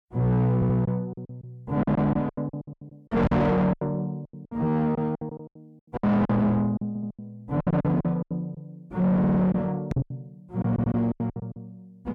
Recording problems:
distortion; soft clipping, signal-to-distortion ratio 6 dB
packet loss; 18% of the sound replaced, filled with silence
stutter; 4 times, first at 0.5 s
knock on the microphone; at 3 s and at 10 s; peak +7 dB vs average level

